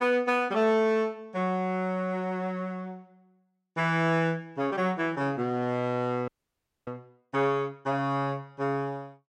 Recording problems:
audio freezing; at 6.5 s for 0.5 s

